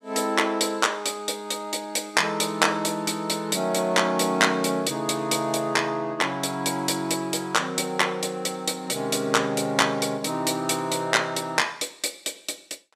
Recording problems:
none

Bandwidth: 14.5 kHz